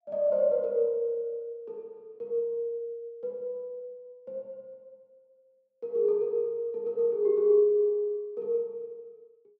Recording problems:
none

